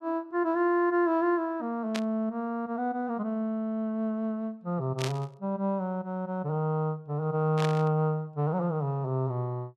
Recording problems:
burst of static; at 2 s, at 5 s and at 7.5 s; peak -1 dB vs average level

